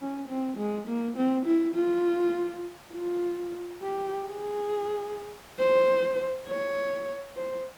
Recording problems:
hiss; SNR 21 dB

